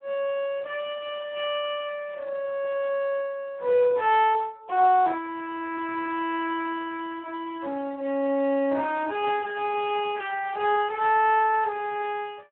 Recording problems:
telephone audio; 300 Hz to 3.3 kHz, Speex

